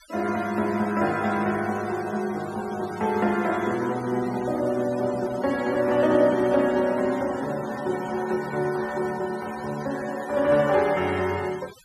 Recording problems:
noise reduction artefacts; signal-to-artefact ratio 18 dB

